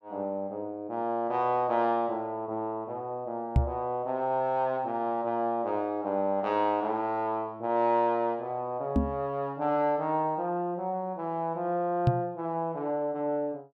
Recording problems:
microphone thump; at 3.5 s, at 9 s and at 12 s; peak +9 dB vs average level

